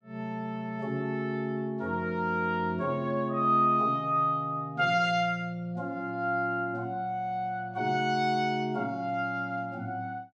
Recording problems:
none

